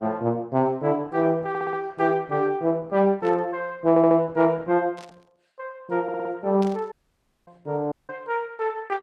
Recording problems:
codec artefacts; Opus, log-spectral distance 2 dB
audio stuttering; at 1.5 s, at 4 s and at 6 s
static burst; at 3 s, at 5 s and at 6.5 s; peak -14 dB vs average level
audio cutting out; at 7 s for 0.5 s and at 8 s

